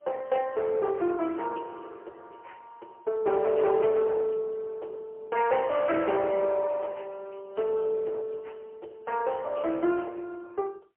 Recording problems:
phone line; 320 Hz to 3 kHz, AMR-NB, then MP3
distortion; hard clipping, uneven, signal-to-distortion ratio 13 dB

